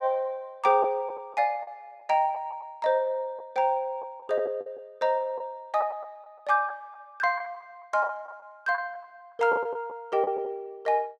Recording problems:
packet loss; 6% of the sound replaced, filled with the last packet

